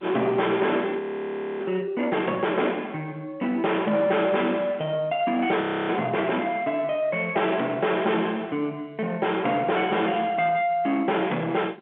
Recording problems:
phone line; 220 Hz to 3.4 kHz, G.711
distortion; soft clipping, signal-to-distortion ratio 7 dB
audio freezing; at 1 s for 0.5 s and at 5.5 s

